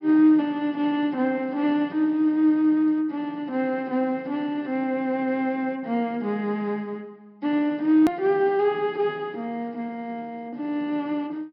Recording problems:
low-pass filter; nothing above 5.4 kHz
click at an edit; at 8 s

